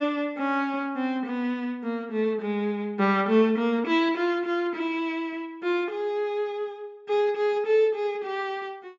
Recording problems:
treble missing; nothing above 8 kHz

